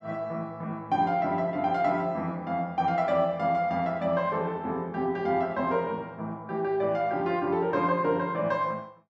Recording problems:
none

